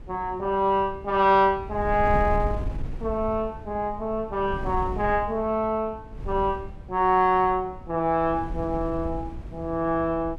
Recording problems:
wind noise; below 110 Hz, SNR 12 dB

